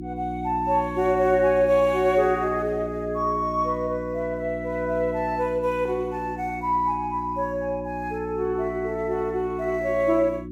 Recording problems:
electrical hum; 60 Hz, harmonics up to 360 Hz, SNR 10 dB

